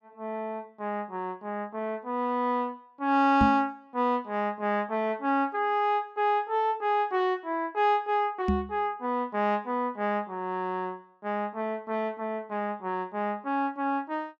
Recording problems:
knock on the microphone; at 3.5 s and at 8.5 s; peak +6 dB vs average level

